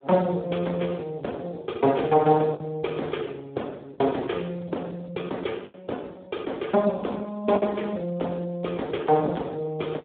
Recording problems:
phone line; 190 Hz to 3.7 kHz, Speex
packet loss; 3% of the sound replaced, filled with the last packet

